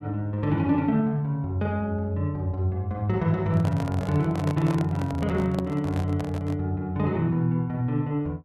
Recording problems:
microphone handling noise; from 3.5 to 6.5 s; peak -4 dB vs average level

